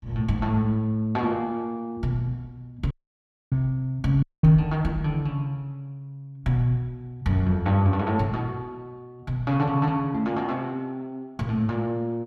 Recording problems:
audio cutting out; at 3 s for 0.5 s and at 4 s

